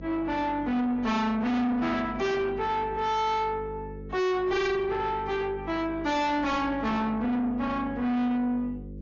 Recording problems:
treble missing; nothing above 6.7 kHz
codec artefacts; AAC, log-spectral distance 2 dB
distorted audio; soft clipping, signal-to-distortion ratio 6 dB
hum; 50 Hz, harmonics up to 550 Hz, SNR 15 dB

